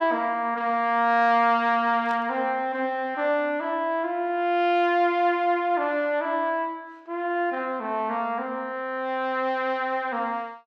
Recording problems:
burst of static; at 2 s; peak -15 dB vs average level

